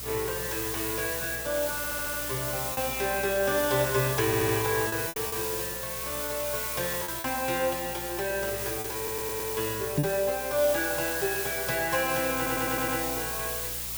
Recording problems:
electrical hum; 60 Hz, harmonics up to 720 Hz, SNR 18 dB
hiss; slope +2 dB per octave, SNR 2 dB
lost packets; 3% of the sound replaced, filled with repeated pitch periods
stutter; 4 times, first at 2 s
knock on the microphone; at 10 s; peak +7 dB vs average level

